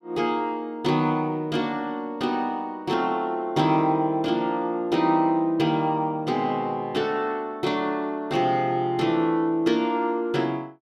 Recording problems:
none

